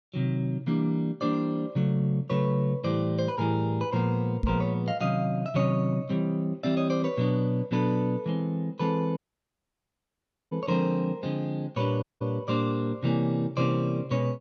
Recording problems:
knock on the microphone; at 4.5 s; peak +4 dB vs average level
dropout; at 9 s for 1.5 s and at 12 s

